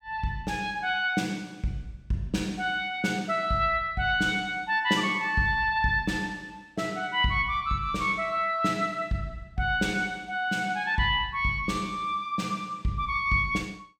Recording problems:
none

